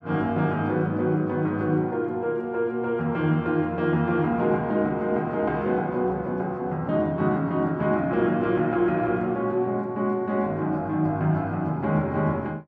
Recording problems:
none

